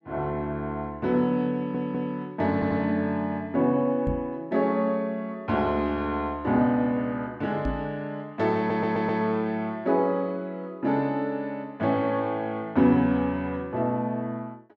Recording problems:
stutter; at 1.5 s, at 2.5 s and at 8.5 s
knock on the microphone; at 4 s and at 7.5 s; peak 0 dB vs average level

